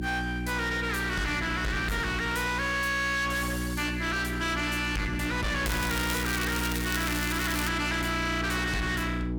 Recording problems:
distorted audio; hard clipping, signal-to-distortion ratio 7 dB
electrical hum; 60 Hz, harmonics up to 1.9 kHz, SNR 4 dB
crackling; from 5.5 to 7.5 s; loose cable, SNR 7 dB

